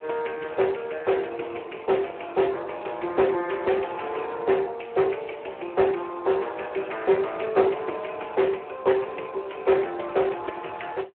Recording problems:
telephone audio; 300 Hz to 3.1 kHz, Speex

